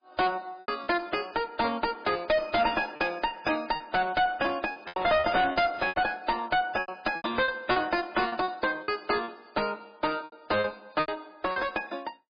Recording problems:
lossy compression; MP3, log-spectral distance 4 dB, nothing above 5 kHz
distorted audio; hard clipping, uneven, signal-to-distortion ratio 6 dB
packet loss; 10% of the sound replaced, filled with repeated pitch periods

